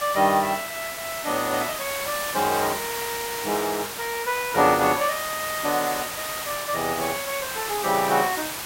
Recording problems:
background hiss; slope -1 dB per octave, SNR 5 dB

